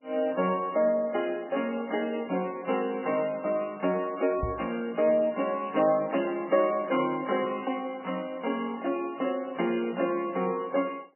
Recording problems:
codec artefacts; MP3, log-spectral distance 4 dB, nothing above 2.9 kHz
microphone thump; at 4.5 s; peak -1 dB vs average level

